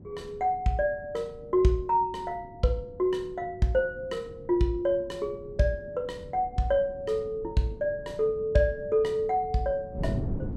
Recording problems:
wind noise; below 230 Hz, SNR 15 dB

